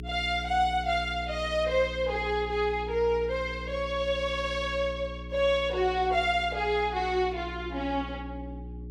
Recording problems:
electrical hum; 60 Hz, harmonics up to 420 Hz, SNR 12 dB

